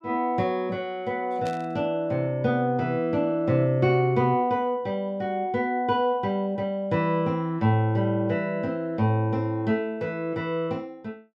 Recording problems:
burst of static; at 1.5 s; peak -11 dB vs average level

